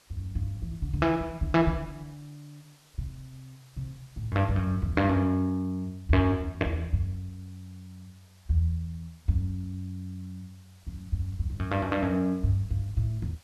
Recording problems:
background hiss; slope -1 dB per octave, SNR 30 dB

